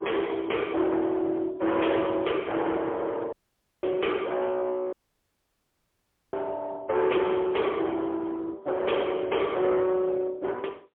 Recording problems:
telephone audio; 300 Hz to 2.1 kHz, AMR-NB, then MP3
distorted audio; hard clipping, uneven, signal-to-distortion ratio 7 dB
audio cutting out; at 3.5 s for 0.5 s and at 5 s for 1.5 s

